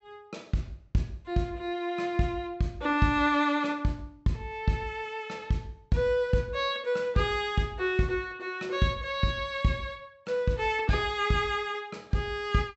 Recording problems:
treble missing; nothing above 7.8 kHz

